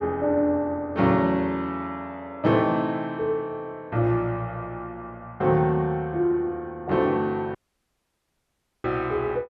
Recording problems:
audio cutting out; at 7.5 s for 1.5 s

